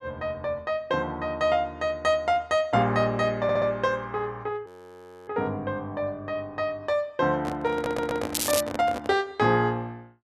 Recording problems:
audio stuttering; at 3.5 s and at 7.5 s
frozen audio; at 4.5 s for 0.5 s
microphone handling noise; from 7.5 to 9 s; peak -1 dB vs average level
crackle; at 8.5 s; loose cable, SNR 2 dB

